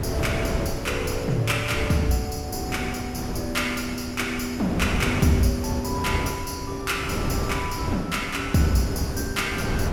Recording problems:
wind noise; below 420 Hz, SNR 4 dB

